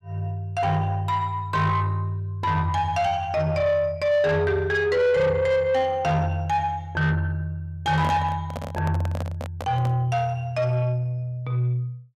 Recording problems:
distortion; soft clipping, signal-to-distortion ratio 11 dB
microphone handling noise; from 8 to 10 s; peak -3 dB vs average level

